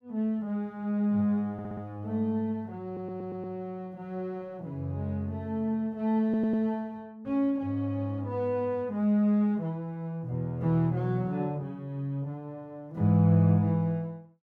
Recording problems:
stutter; at 1.5 s, at 3 s and at 6 s

